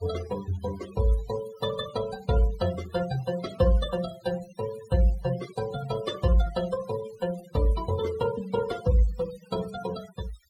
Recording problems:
noise reduction artefacts; signal-to-artefact ratio 16 dB

